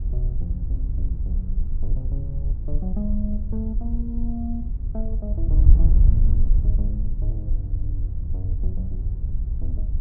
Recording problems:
wind noise; below 60 Hz, SNR -9 dB

